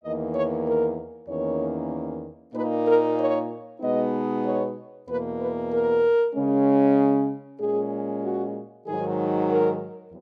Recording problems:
none

